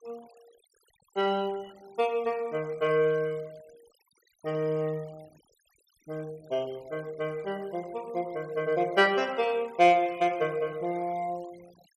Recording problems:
noise reduction artefacts; signal-to-artefact ratio 25 dB

